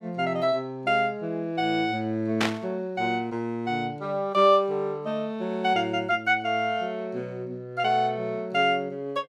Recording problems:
static burst; at 2.5 s; peak +4 dB vs average level

